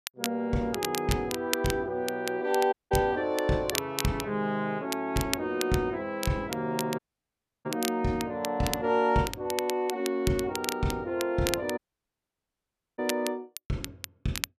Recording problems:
crackling; vinyl, SNR 7 dB
dropout; at 2.5 s, at 7 s for 0.5 s and at 12 s for 1 s

